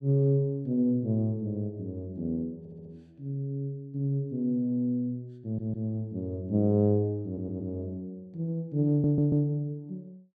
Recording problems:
audio stuttering; 4 times, first at 2.5 s

